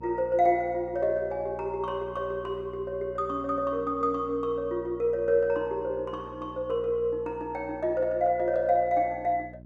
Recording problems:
hum; 60 Hz, harmonics up to 660 Hz, SNR 19 dB

